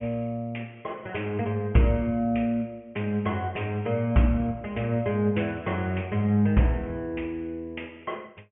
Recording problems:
treble missing; nothing above 3 kHz

